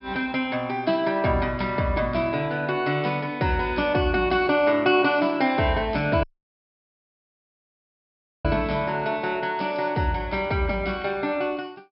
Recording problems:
low-pass filter; nothing above 5.3 kHz
dropout; at 6 s for 2 s

